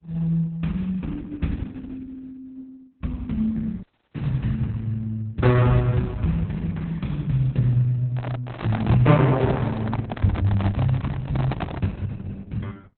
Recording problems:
lossy compression; Opus, log-spectral distance 2 dB, nothing above 3.9 kHz
audio cutting out; at 4 s
handling noise; from 8 to 12 s; peak +2 dB vs average level

